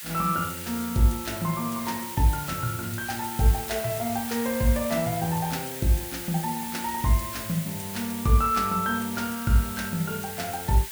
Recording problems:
background hiss; SNR 8 dB

